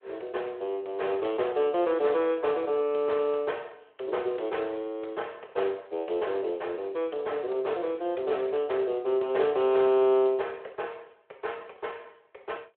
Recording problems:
telephone audio; 340 Hz to 3.4 kHz, Speex

